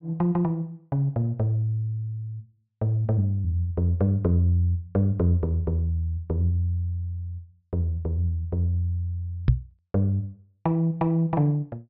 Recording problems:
treble missing; nothing above 5.5 kHz
microphone thump; at 9.5 s; peak +9 dB vs average level

